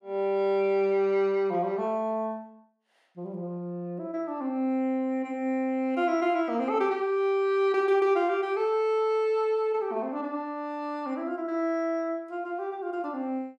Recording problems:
none

